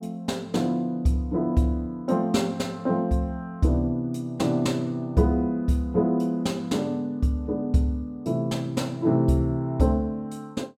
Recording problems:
none

